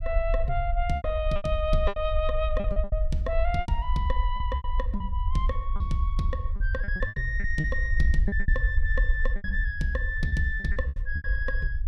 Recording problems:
rumble; below 56 Hz, SNR 0 dB
packet loss; 12% of the sound replaced, filled with repeated pitch periods

